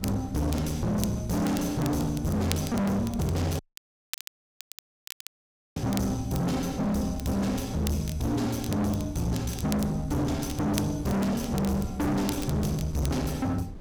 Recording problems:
distortion; hard clipping, uneven, signal-to-distortion ratio 5 dB
wind noise; below 250 Hz, SNR 15 dB
crackling; vinyl, SNR 15 dB
audio cutting out; at 3.5 s for 2 s

